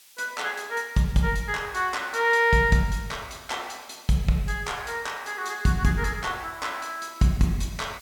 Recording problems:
background hiss; slope +4 dB per octave, SNR 24 dB

